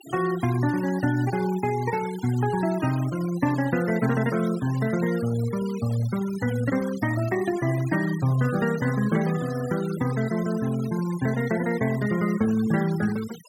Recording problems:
noise reduction artefacts; signal-to-artefact ratio 16 dB

